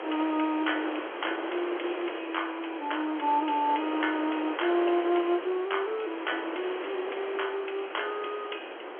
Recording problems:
phone line; 280 Hz to 3.3 kHz, G.711
wind on the microphone; below 1.5 kHz, SNR 7 dB

